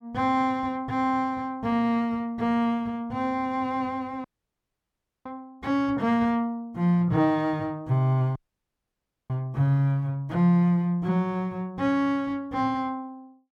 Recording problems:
audio cutting out; at 4 s for 1 s and at 8.5 s for 1 s

